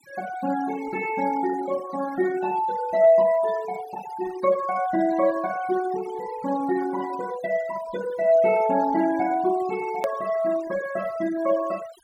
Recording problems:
noise reduction artefacts; signal-to-artefact ratio 17 dB
edit click; at 10 s

